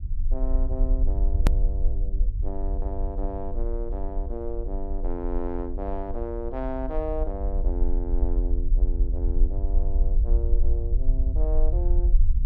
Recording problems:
rumble; below 50 Hz, SNR -7 dB
click at an edit; at 1.5 s

